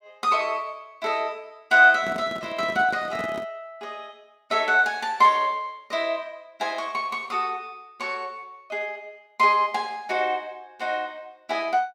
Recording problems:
microphone handling noise; from 2 to 3.5 s; peak -8 dB vs average level

